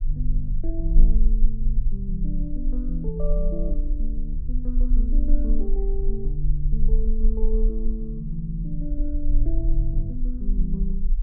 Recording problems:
low-frequency rumble; below 36 Hz, strongest tone 22 Hz, SNR -6 dB

